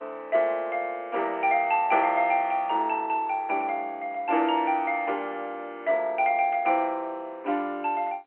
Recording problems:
telephone audio; 300 Hz to 3.2 kHz, G.711

